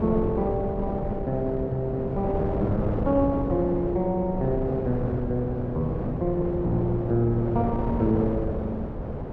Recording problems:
wind noise; below 480 Hz, SNR 4 dB

